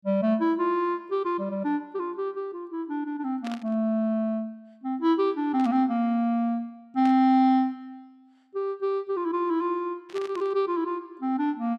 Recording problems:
static burst; 4 times, first at 3.5 s; peak -10 dB vs average level

